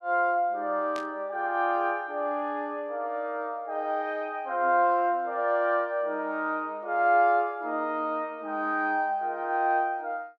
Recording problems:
burst of static; at 1 s; peak -10 dB vs average level

